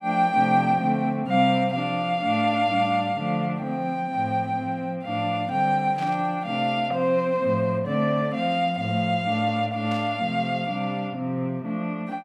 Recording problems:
static burst; at 6 s and at 10 s; peak -12 dB vs average level

